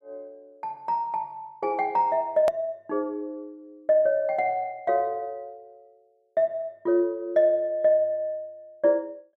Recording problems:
hard cut with a click; at 2.5 s

